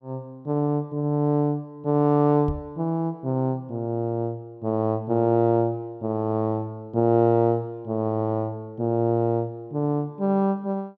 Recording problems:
knock on the microphone; at 2.5 s; peak -3 dB vs average level

